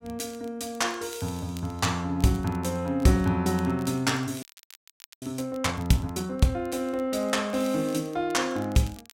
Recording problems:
crackle; vinyl, SNR 24 dB
frozen audio; at 4.5 s for 1 s

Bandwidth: 16 kHz